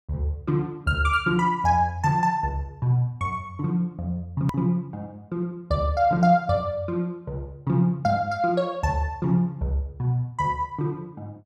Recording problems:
hard cut with a click; at 4.5 s

